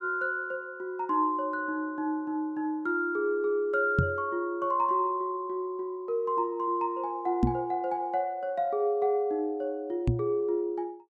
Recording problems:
microphone thump; at 4 s, at 7.5 s and at 10 s; peak +9 dB vs average level

